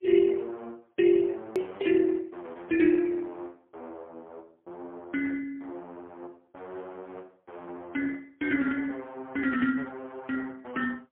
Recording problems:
telephone audio; 220 Hz to 3.4 kHz, AMR-NB, then MP3
hard cut with a click; at 1.5 s

